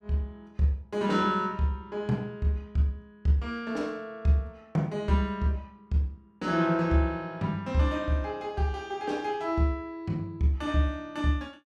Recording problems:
none

